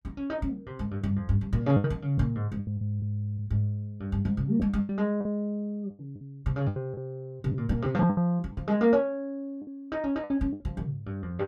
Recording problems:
packet loss; 9% of the sound replaced, filled with the last packet

